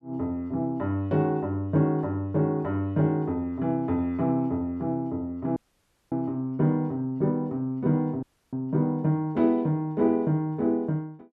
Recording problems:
dropout; at 5.5 s for 0.5 s and at 8 s

